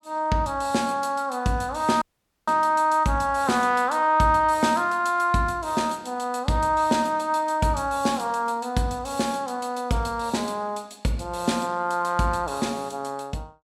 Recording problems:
dropout; at 2 s

